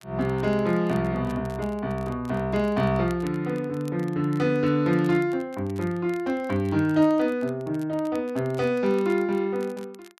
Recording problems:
crackle; vinyl, SNR 27 dB

